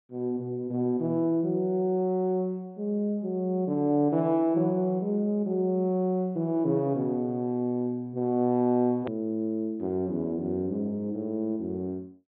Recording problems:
treble cut off; nothing above 4 kHz
hard cut with a click; at 9 s

